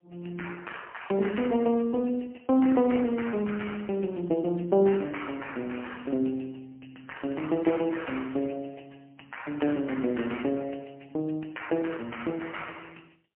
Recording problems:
phone line; 190 Hz to 3.1 kHz, AMR-NB, then MP3

